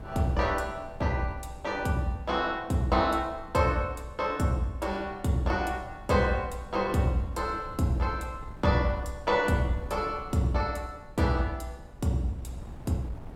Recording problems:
wind noise; below 180 Hz, SNR 18 dB

